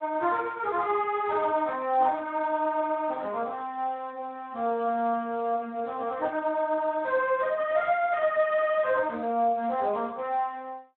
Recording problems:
telephone audio; 260 Hz to 3.7 kHz, Speex

